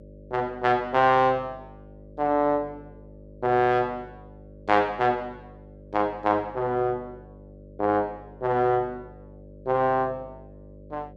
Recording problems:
electrical hum; 50 Hz, harmonics up to 600 Hz, SNR 22 dB

